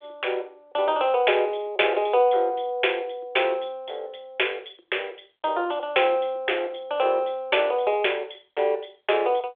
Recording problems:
phone line; 320 Hz to 3.5 kHz, G.726

